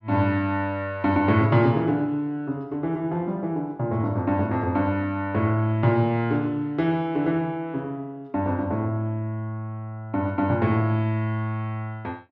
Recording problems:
none

